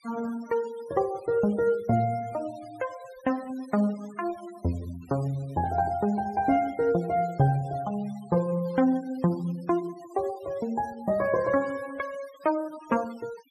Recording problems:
noise reduction artefacts; signal-to-artefact ratio 22 dB

